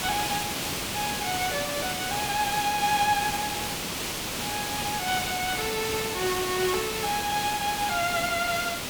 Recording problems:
hiss; slope -2 dB per octave, SNR 1 dB

